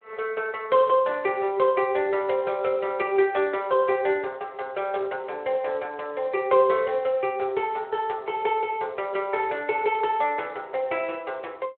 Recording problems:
phone line; 340 Hz to 3.5 kHz, Speex

